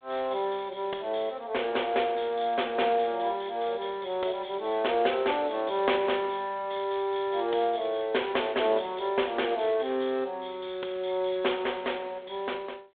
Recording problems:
telephone audio; 320 Hz to 3.6 kHz, G.726

